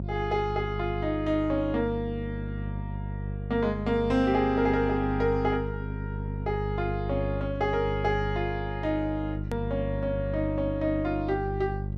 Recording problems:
electrical hum; 50 Hz, harmonics up to 400 Hz, SNR 5 dB
edit click; at 9.5 s

